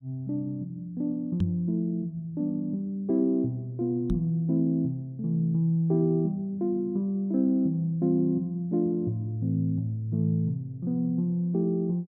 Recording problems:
microphone thump; at 1.5 s and at 4 s; peak +3 dB vs average level

